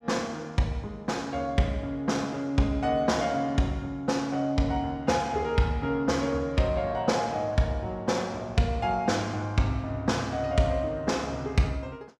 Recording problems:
none

